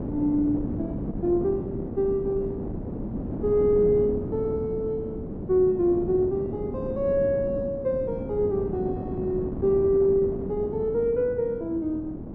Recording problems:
wind on the microphone; below 340 Hz, SNR 7 dB

